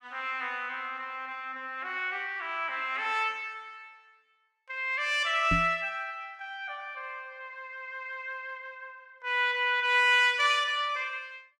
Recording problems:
microphone thump; at 5.5 s; peak +2 dB vs average level

